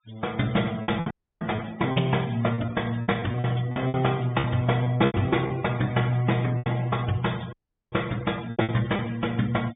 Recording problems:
treble missing; nothing above 3.6 kHz
noise reduction artefacts; signal-to-artefact ratio 19 dB
packet loss; 10% of the sound replaced, filled with repeated pitch periods
audio cutting out; at 1 s and at 7.5 s

